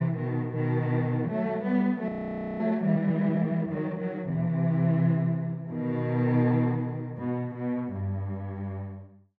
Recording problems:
frozen audio; at 2 s for 0.5 s

